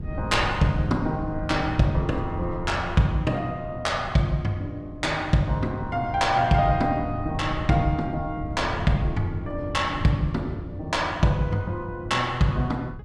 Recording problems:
wind noise; below 160 Hz, SNR 11 dB

